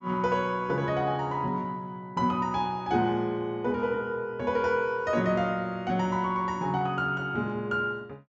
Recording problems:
treble cut off; nothing above 7.8 kHz

